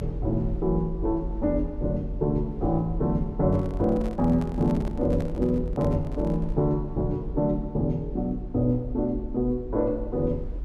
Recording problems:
low-frequency rumble; below 50 Hz, strongest tone 46 Hz, SNR 9 dB
microphone handling noise; from 3.5 to 6.5 s; peak -10 dB vs average level

